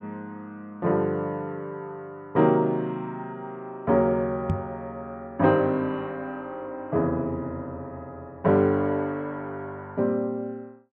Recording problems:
microphone bump; at 4.5 s; peak +4 dB vs average level

